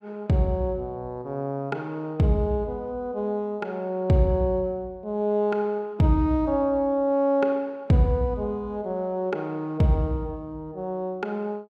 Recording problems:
none

